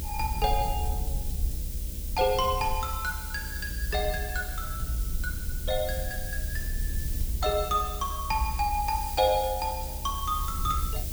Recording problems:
hum; 60 Hz, harmonics up to 600 Hz, SNR 17 dB
background hiss; slope +6 dB per octave, SNR 8 dB
rumble; below 72 Hz, SNR 6 dB

